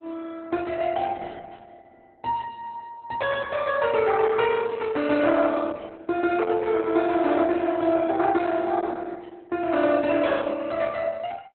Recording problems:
lossy codec; Opus, log-spectral distance 4 dB, nothing above 3.8 kHz

